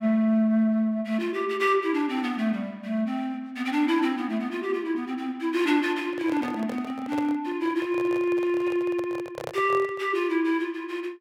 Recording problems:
microphone handling noise; from 6 to 10 s; peak -4 dB vs average level

